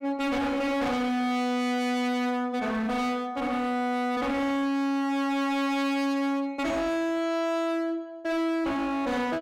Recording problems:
distortion; hard clipping, signal-to-distortion ratio 7 dB

